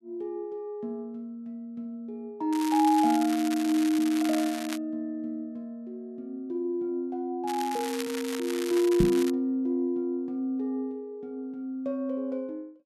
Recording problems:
crackle; from 2.5 to 5 s and from 7.5 to 9.5 s; loose cable, SNR 10 dB
knock on the microphone; at 9 s; peak +7 dB vs average level

